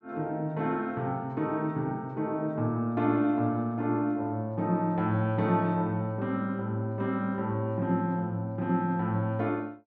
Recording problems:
none

